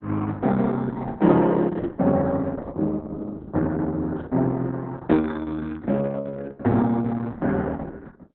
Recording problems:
lossy compression; Opus, log-spectral distance 3 dB, nothing above 3.8 kHz

